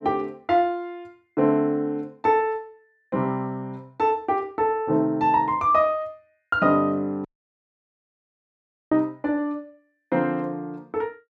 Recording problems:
dropout; at 7.5 s for 1.5 s

